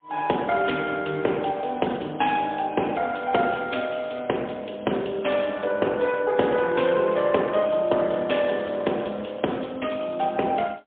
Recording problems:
phone line; 260 Hz to 3.4 kHz, AMR-NB, then MP3

